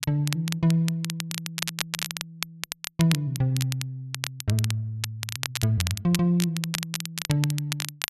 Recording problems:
crackling; vinyl, SNR 6 dB

